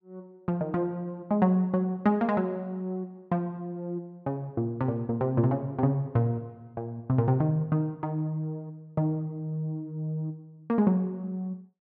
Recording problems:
none

